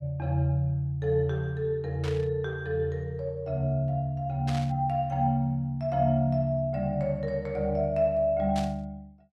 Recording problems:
static burst; at 2 s, at 4.5 s and at 8.5 s; peak -7 dB vs average level

